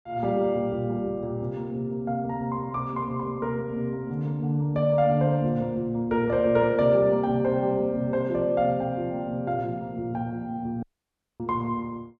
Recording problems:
dropout; at 11 s for 0.5 s

